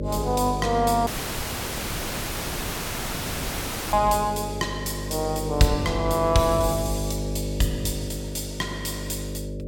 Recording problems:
electrical hum; 50 Hz, harmonics up to 600 Hz, SNR 6 dB
dropout; at 1 s for 3 s

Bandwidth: 17 kHz